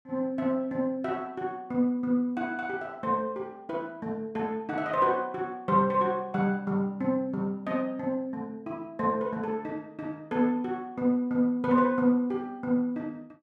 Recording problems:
none

